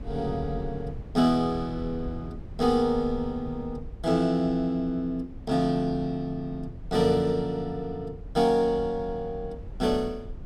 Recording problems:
rumble; below 120 Hz, SNR 14 dB

